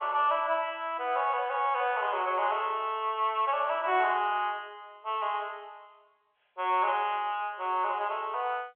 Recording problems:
telephone audio; 340 Hz to 3.4 kHz, G.711

